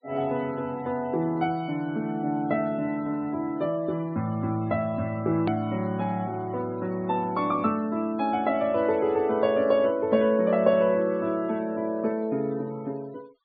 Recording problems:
treble cut off; nothing above 4.7 kHz
denoising artefacts; signal-to-artefact ratio 26 dB
click at an edit; at 5.5 s

